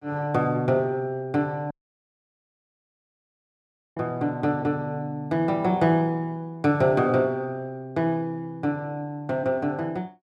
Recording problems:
audio cutting out; at 1.5 s for 2.5 s

